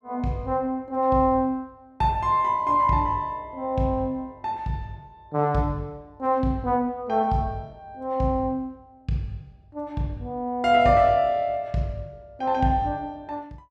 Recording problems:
none

